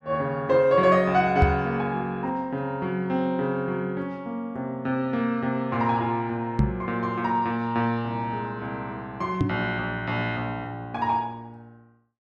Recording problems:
microphone bump; at 1.5 s, at 6.5 s and at 9.5 s; peak +8 dB vs average level

